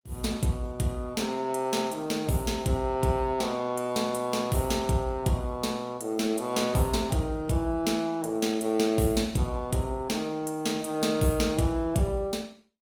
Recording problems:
lossy codec; Opus, log-spectral distance 3 dB, nothing above 19 kHz

